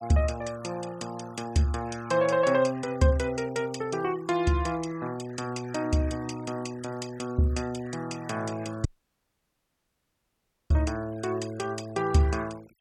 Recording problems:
noise reduction artefacts; signal-to-artefact ratio 19 dB
audio cutting out; at 9 s for 2 s

